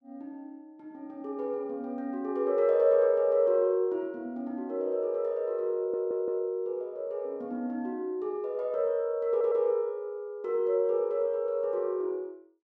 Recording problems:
audio stuttering; at 6 s and at 9.5 s

